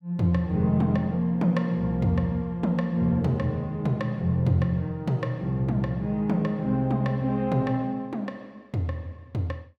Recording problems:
none

